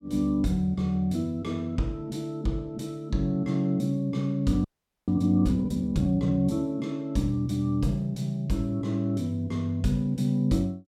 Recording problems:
audio freezing; at 4.5 s

